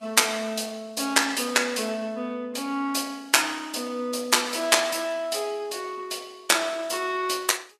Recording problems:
codec artefacts; Vorbis, log-spectral distance 4 dB, nothing above 13.5 kHz

